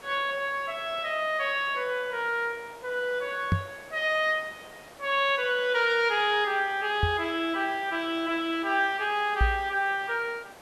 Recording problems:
background hiss; SNR 21 dB
knock on the microphone; at 3.5 s, at 7 s and at 9.5 s; peak +6 dB vs average level

